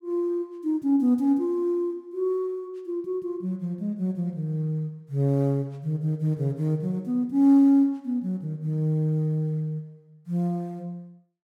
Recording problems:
none

